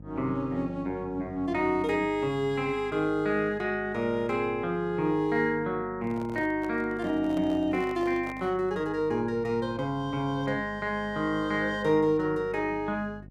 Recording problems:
electrical hum; 50 Hz, harmonics up to 600 Hz, SNR 19 dB
microphone handling noise; from 6 to 8.5 s; peak -8 dB vs average level

